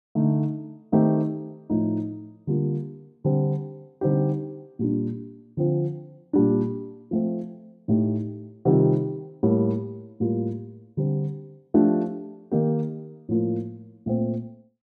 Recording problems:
none

